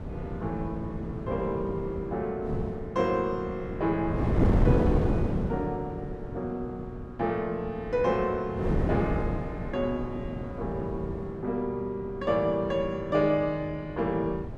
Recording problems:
wind on the microphone; below 310 Hz, SNR 2 dB

